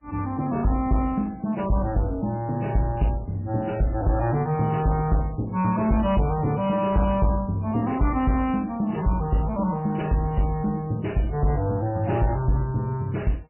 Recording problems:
lossy codec; MP3, then MP3, log-spectral distance 3 dB, nothing above 2.7 kHz
distortion; soft clipping, signal-to-distortion ratio 11 dB

